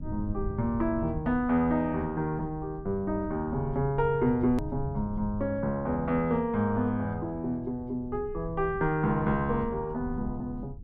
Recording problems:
low-frequency rumble; below 110 Hz, SNR 13 dB
hard cut with a click; at 4.5 s

